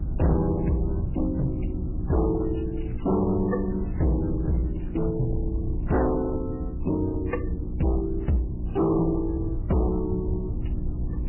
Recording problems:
lossy compression; MP3, then AAC, log-spectral distance 2 dB, nothing above 11 kHz
distortion; hard clipping, signal-to-distortion ratio 10 dB
electrical hum; 60 Hz, harmonics up to 360 Hz, SNR 10 dB
low-frequency rumble; below 100 Hz, SNR 6 dB
crackling; from 2.5 to 5 s; loose cable, SNR 27 dB

